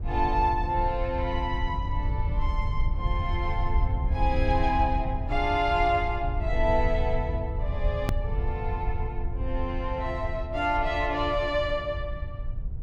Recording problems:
rumble; below 80 Hz, SNR 2 dB
edit click; at 8 s

